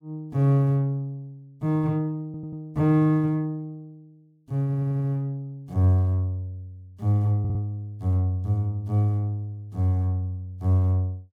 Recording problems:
audio stuttering; at 2.5 s, at 4.5 s and at 7.5 s

